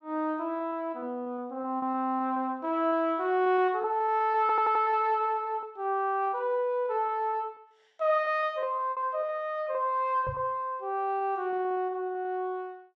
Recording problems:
lost packets; 9% of the sound replaced, filled with repeated pitch periods
stutter; at 4.5 s
microphone thump; at 10 s; peak -5 dB vs average level

